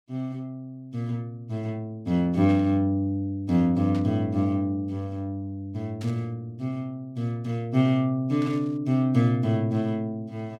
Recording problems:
burst of static; 4 times, first at 2.5 s; peak -13 dB vs average level

